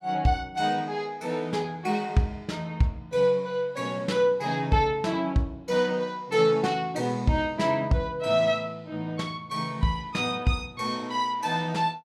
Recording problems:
none

